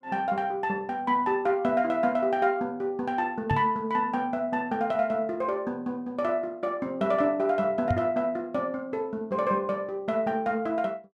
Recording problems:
microphone thump; at 3.5 s and at 8 s; peak +3 dB vs average level

